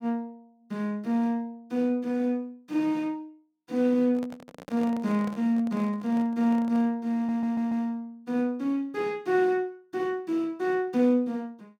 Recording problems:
handling noise; from 4 to 7 s; peak -9 dB vs average level
audio stuttering; at 7 s

